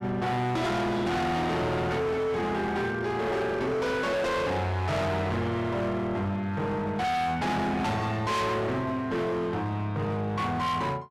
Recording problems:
distortion; hard clipping, signal-to-distortion ratio 6 dB

